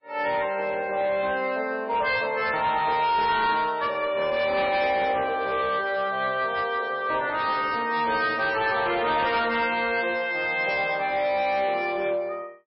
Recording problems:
lossy compression; MP3, log-spectral distance 3 dB, nothing above 5.2 kHz
distortion; hard clipping, signal-to-distortion ratio 12 dB

